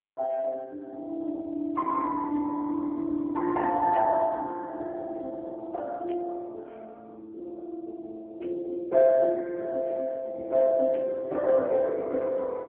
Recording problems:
telephone audio; 300 Hz to 2.1 kHz, AMR-NB
static burst; 4 times, first at 4 s; peak -15 dB vs average level

